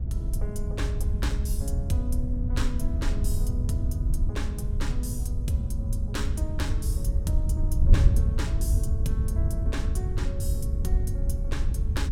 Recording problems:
wind noise; below 84 Hz, SNR -8 dB

